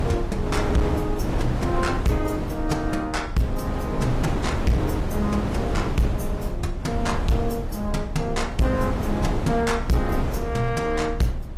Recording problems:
lossy codec; AAC, log-spectral distance 2 dB
distortion; hard clipping, signal-to-distortion ratio 10 dB
rumble; below 66 Hz, strongest tone 28 Hz, SNR 9 dB
wind noise; below 480 Hz, SNR 3 dB

